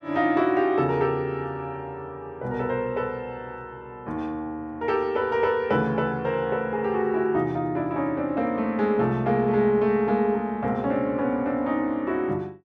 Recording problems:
none

